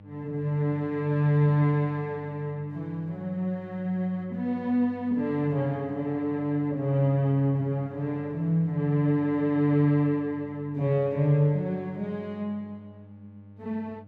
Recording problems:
hum; 50 Hz, harmonics up to 800 Hz, SNR 22 dB

